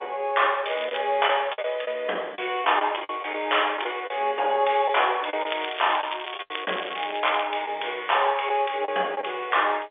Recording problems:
phone line; 340 Hz to 3.6 kHz, G.711
lost packets; 7% of the sound replaced, filled with the last packet
crackling; at 0.5 s and from 5.5 to 7.5 s; loose cable, SNR 10 dB

